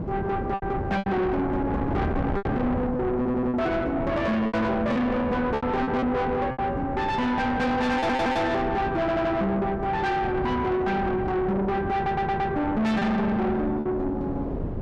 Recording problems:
distortion; soft clipping, signal-to-distortion ratio 7 dB
wind on the microphone; below 480 Hz, SNR 6 dB
lost packets; 5% of the sound replaced, filled with repeated pitch periods
stutter; 4 times, first at 3 s

